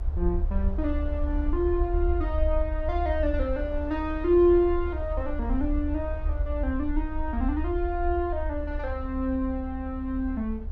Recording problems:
rumble; below 70 Hz, SNR 4 dB
wind noise; below 840 Hz, SNR 21 dB

